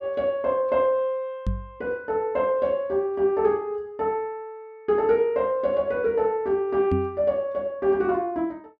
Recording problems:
microphone bump; at 1.5 s and at 7 s; peak +3 dB vs average level

